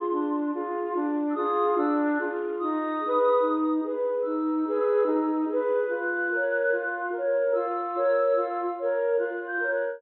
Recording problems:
treble cut off; nothing above 3.7 kHz

